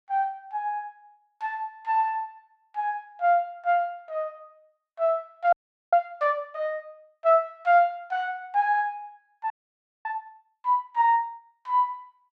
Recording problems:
frozen audio; at 5.5 s and at 9.5 s for 0.5 s

